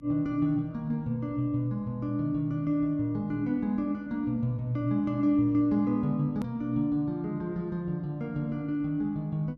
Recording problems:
hum; 50 Hz, harmonics up to 300 Hz, SNR 25 dB
edit click; at 6.5 s

